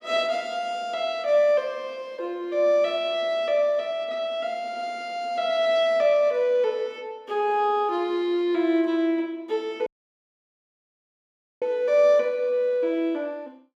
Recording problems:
audio cutting out; at 10 s for 2 s

